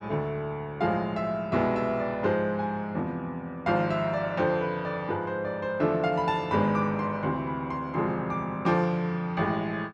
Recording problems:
none

